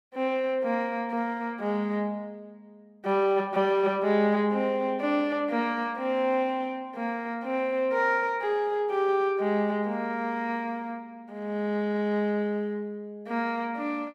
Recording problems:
none

